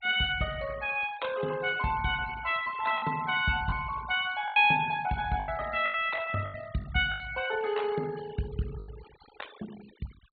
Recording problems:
treble cut off; nothing above 4 kHz
denoising artefacts; signal-to-artefact ratio 19 dB
lost packets; 6% of the sound replaced, filled with the last packet

